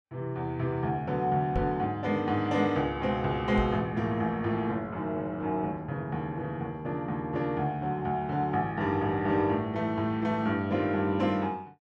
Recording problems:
knock on the microphone; at 1.5 s and at 3.5 s; peak +1 dB vs average level

